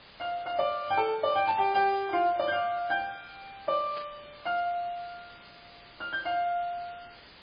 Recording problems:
lossy codec; MP3, log-spectral distance 10 dB
background hiss; SNR 21 dB
static burst; at 1.5 s and at 4 s; peak -8 dB vs average level

